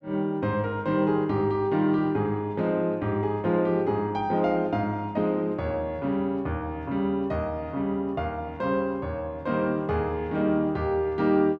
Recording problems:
none

